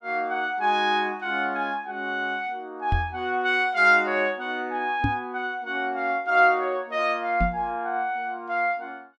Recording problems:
knock on the microphone; at 3 s, at 5 s and at 7.5 s; peak +3 dB vs average level

